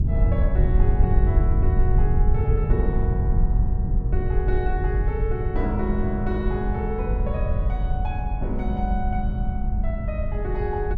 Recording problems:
rumble; below 84 Hz, SNR -6 dB

